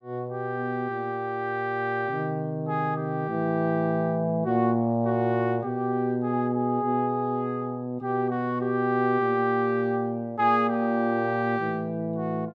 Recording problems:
none

